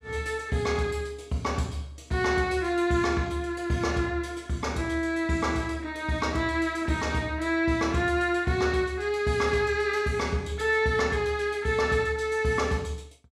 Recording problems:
none

